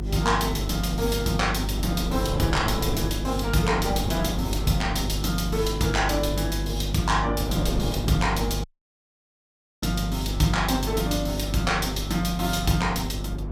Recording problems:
hum; 50 Hz, harmonics up to 350 Hz, SNR 4 dB
wind noise; below 420 Hz, SNR 9 dB
dropout; at 8.5 s for 1 s

